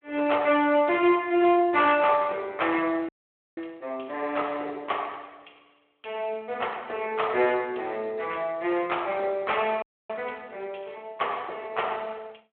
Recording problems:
telephone audio; 300 Hz to 3.5 kHz, Speex
distorted audio; hard clipping, signal-to-distortion ratio 14 dB
audio freezing; at 3 s and at 10 s

